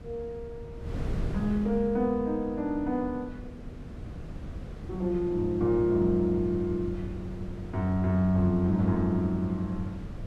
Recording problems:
wind on the microphone; below 190 Hz, SNR 12 dB

